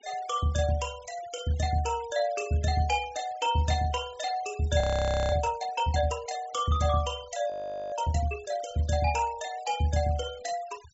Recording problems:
low-pass filter; nothing above 7.7 kHz
noise reduction artefacts; signal-to-artefact ratio 19 dB
frozen audio; at 5 s for 0.5 s and at 7.5 s

